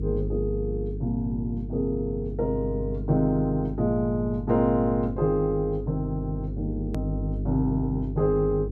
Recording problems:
electrical hum; 50 Hz, harmonics up to 450 Hz, SNR 6 dB
edit click; at 7 s

